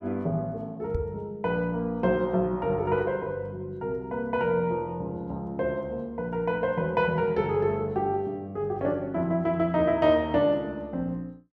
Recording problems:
knock on the microphone; at 1 s; peak 0 dB vs average level

